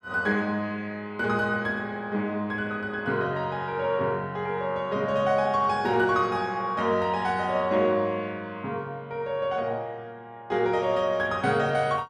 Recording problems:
none

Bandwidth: 12.5 kHz